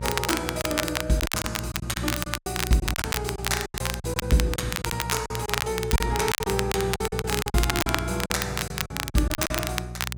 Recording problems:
hum; 60 Hz, harmonics up to 420 Hz, SNR 7 dB
crackle; vinyl, SNR 2 dB
packet loss; 14% of the sound replaced, filled with silence

